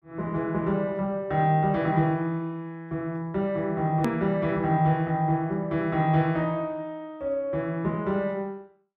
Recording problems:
hard cut with a click; at 4 s

